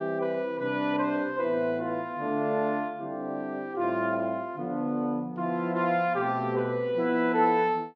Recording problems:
none

